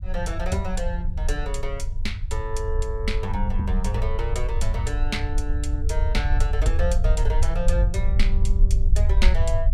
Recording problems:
rumble; below 60 Hz, SNR -5 dB

